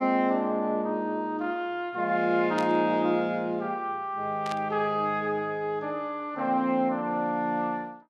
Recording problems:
static burst; at 2.5 s and at 4.5 s; peak -6 dB vs average level

